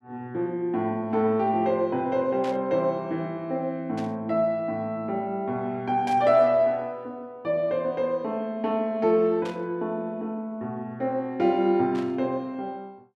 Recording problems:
burst of static; 5 times, first at 2.5 s; peak -11 dB vs average level

